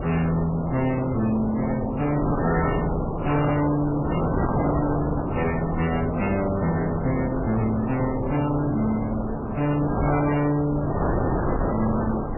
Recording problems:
lossy compression; MP3, then MP3, log-spectral distance 4 dB, nothing above 2.5 kHz
distortion; hard clipping, uneven, signal-to-distortion ratio 7 dB
wind noise; below 690 Hz, SNR 3 dB

